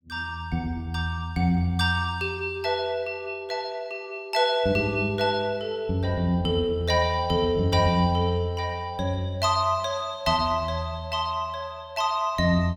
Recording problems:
none

